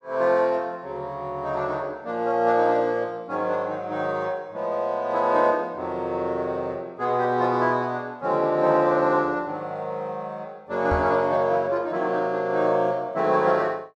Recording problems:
knock on the microphone; at 11 s; peak -2 dB vs average level

